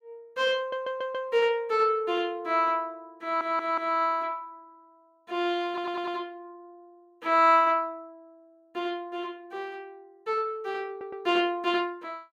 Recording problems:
audio stuttering; 4 times, first at 0.5 s

